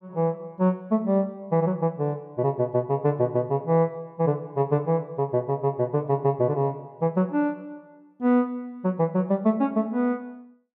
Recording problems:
none

